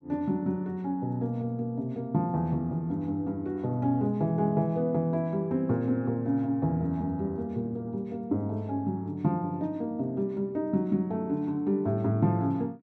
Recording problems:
none

